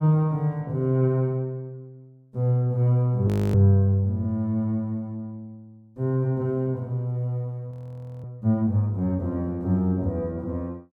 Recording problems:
audio freezing; at 3.5 s and at 7.5 s for 0.5 s

